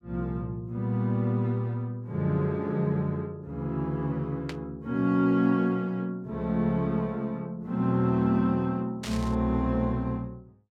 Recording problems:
static burst; at 4.5 s and at 9 s; peak -6 dB vs average level

